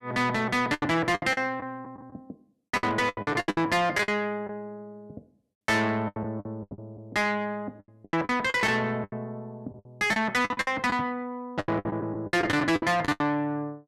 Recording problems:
distorted audio; soft clipping, signal-to-distortion ratio 7 dB
lost packets; 16% of the sound replaced, filled with the last packet

